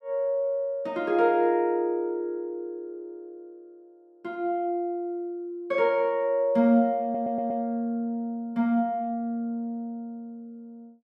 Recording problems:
stutter; at 7 s

